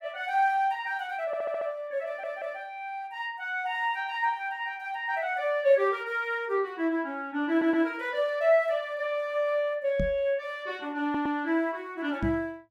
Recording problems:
audio stuttering; 4 times, first at 1.5 s
microphone thump; at 10 s and at 12 s; peak +1 dB vs average level

